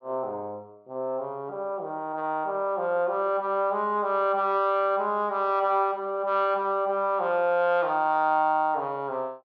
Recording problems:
none

